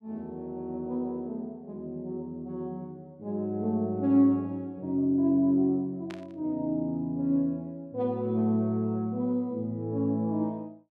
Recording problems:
burst of static; at 6 s; peak -11 dB vs average level

